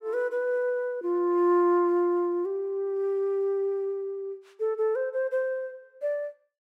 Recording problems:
none

